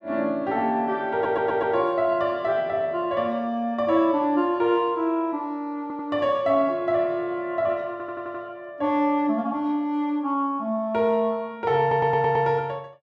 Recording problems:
stutter; 4 times, first at 1 s

